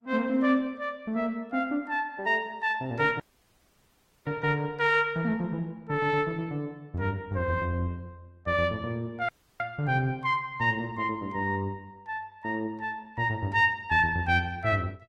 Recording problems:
codec artefacts; Opus, log-spectral distance 2 dB
audio cutting out; at 3 s for 1 s and at 9.5 s

